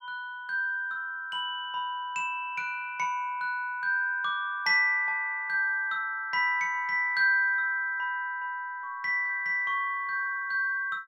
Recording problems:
none

